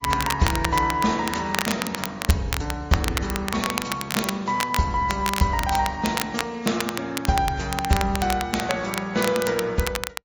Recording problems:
codec artefacts; MP3, then AAC, log-spectral distance 4 dB
crackling; vinyl, SNR 5 dB

